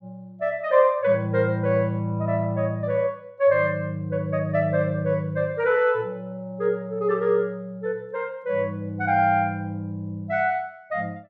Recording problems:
none

